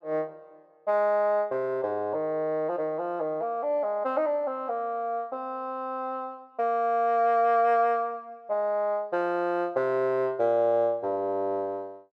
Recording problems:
none

